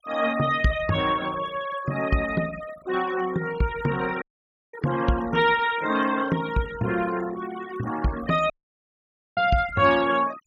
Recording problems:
noise reduction artefacts; signal-to-artefact ratio 15 dB
audio cutting out; at 4 s for 0.5 s and at 8.5 s for 1 s

